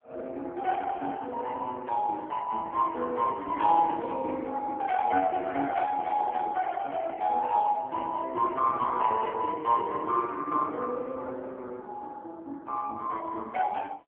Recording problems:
telephone audio; 220 Hz to 3.4 kHz, AMR-NB

